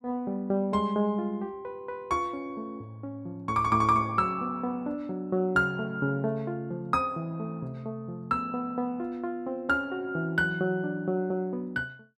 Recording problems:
none

